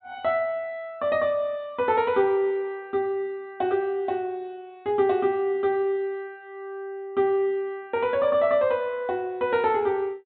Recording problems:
treble cut off; nothing above 4 kHz

